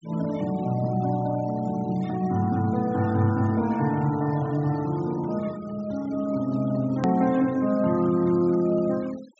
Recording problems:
treble missing; nothing above 8 kHz
denoising artefacts; signal-to-artefact ratio 23 dB
click at an edit; at 7 s

